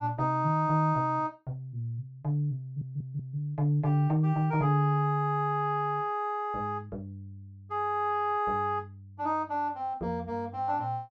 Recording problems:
stutter; at 2.5 s

